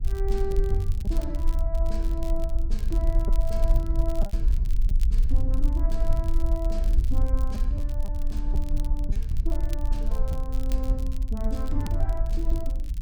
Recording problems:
rumble; below 48 Hz, SNR -7 dB
crackle; vinyl, SNR 16 dB
lost packets; 2% of the sound replaced, filled with repeated pitch periods

